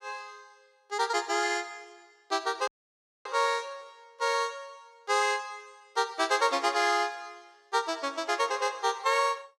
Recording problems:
dropout; at 2.5 s for 0.5 s

